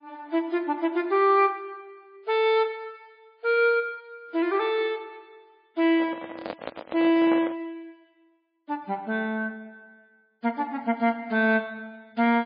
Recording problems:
lossy codec; MP3, log-spectral distance 2 dB
handling noise; from 6 to 7.5 s; peak -2 dB vs average level

